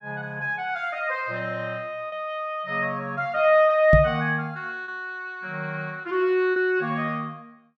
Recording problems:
lost packets; 1.6% of the sound replaced, filled with repeated pitch periods
knock on the microphone; at 4 s; peak +9 dB vs average level

